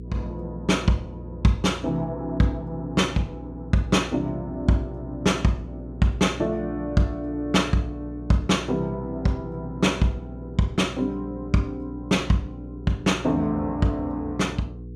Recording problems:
hum; 60 Hz, harmonics up to 480 Hz, SNR 13 dB

